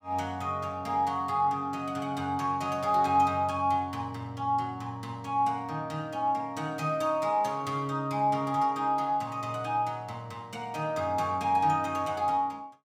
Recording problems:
none

